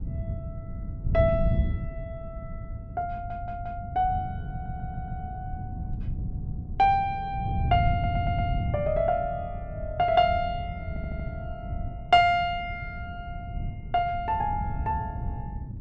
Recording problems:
wind noise; below 140 Hz, SNR 6 dB
audio stuttering; 4 times, first at 3 s

